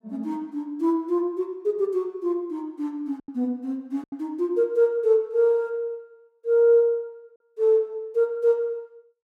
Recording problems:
lost packets; 2% of the sound replaced, filled with silence

